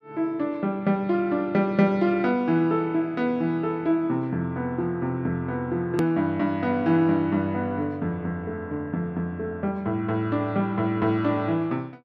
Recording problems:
click at an edit; at 6 s

